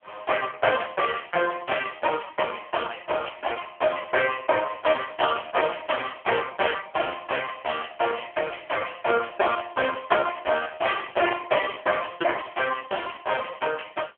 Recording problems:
telephone audio; 320 Hz to 3.1 kHz, AMR-NB
packet loss; 9% of the sound replaced, filled with repeated pitch periods

